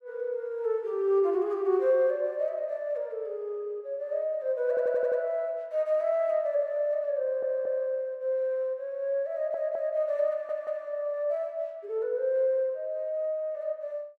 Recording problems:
stutter; 4 times, first at 4.5 s

